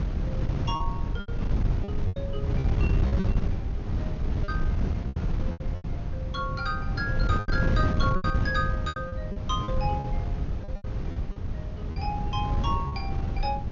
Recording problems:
low-pass filter; nothing above 6.8 kHz
wind on the microphone; below 130 Hz, SNR -4 dB
packet loss; 10% of the sound replaced, filled with repeated pitch periods

